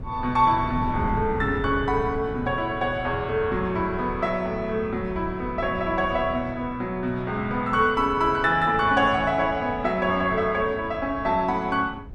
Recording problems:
wind on the microphone; below 190 Hz, SNR 13 dB

